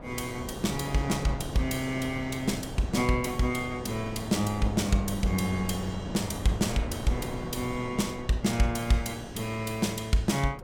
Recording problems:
wind noise; below 560 Hz, SNR 10 dB

